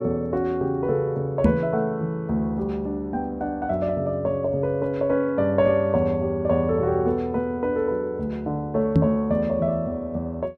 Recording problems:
microphone thump; at 1.5 s and at 9 s; peak +9 dB vs average level

